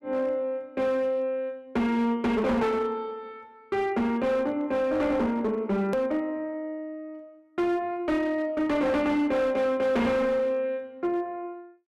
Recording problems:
distortion; hard clipping, signal-to-distortion ratio 10 dB
edit click; at 6 s

